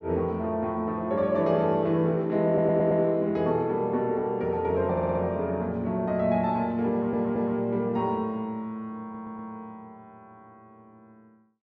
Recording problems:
audio stuttering; 4 times, first at 2.5 s

